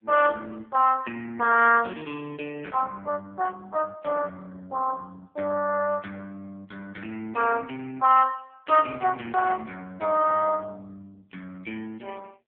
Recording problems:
phone line; 260 Hz to 2.6 kHz, AMR-NB

